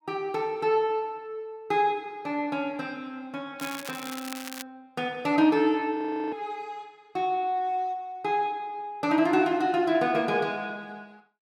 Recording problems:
crackle; from 3.5 to 4.5 s; loose cable, SNR 12 dB
audio freezing; at 6 s

